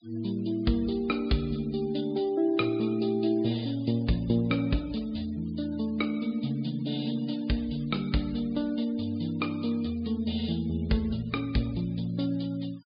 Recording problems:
treble cut off; nothing above 4.9 kHz
denoising artefacts; signal-to-artefact ratio 23 dB

